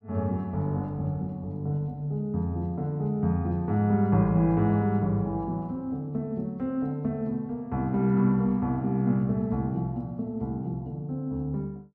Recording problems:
none

